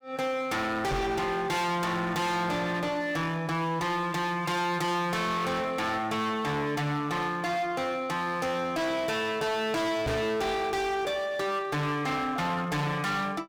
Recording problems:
distorted audio; hard clipping, signal-to-distortion ratio 6 dB
microphone thump; at 1 s and at 10 s; peak +4 dB vs average level

